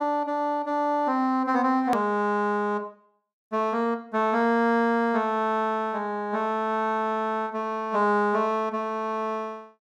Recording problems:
edit click; at 2 s

